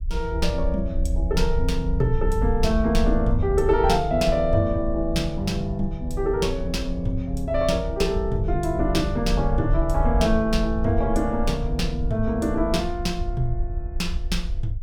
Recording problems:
low-frequency rumble; below 62 Hz, SNR 5 dB

